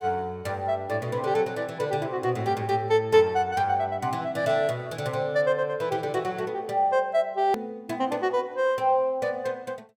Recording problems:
click at an edit; at 7.5 s

